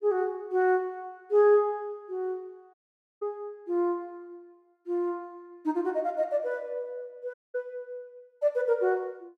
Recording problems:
audio cutting out; at 2.5 s and at 7.5 s

